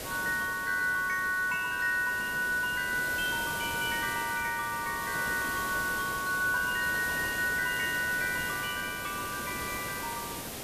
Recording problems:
hiss; slope -4 dB per octave, SNR 8 dB

